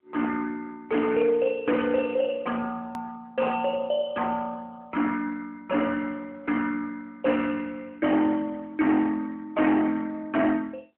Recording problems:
phone line; 240 Hz to 3.1 kHz, AMR-NB
distorted audio; hard clipping, uneven, signal-to-distortion ratio 12 dB
click at an edit; at 3 s

